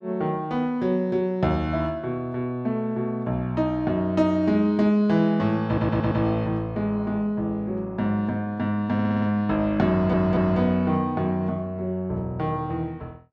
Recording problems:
audio stuttering; at 5.5 s, at 9 s and at 10 s

